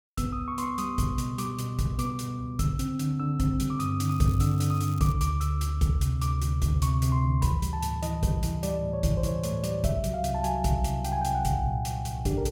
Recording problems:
crackle; from 4 to 5 s; loose cable, SNR 21 dB

